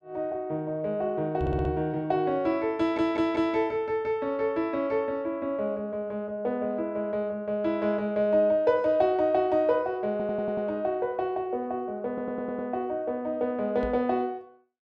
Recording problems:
audio stuttering; 4 times, first at 1.5 s
microphone thump; at 1.5 s and at 14 s; peak 0 dB vs average level

